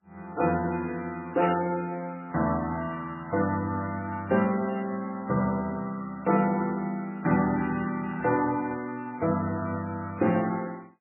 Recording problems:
codec artefacts; MP3, log-spectral distance 3 dB, nothing above 2.7 kHz
burst of static; at 1.5 s; peak -5 dB vs average level

